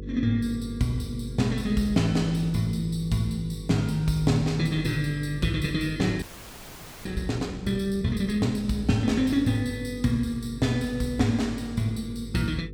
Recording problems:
hum; 50 Hz, harmonics up to 500 Hz, SNR 13 dB
frozen audio; at 6 s for 1 s

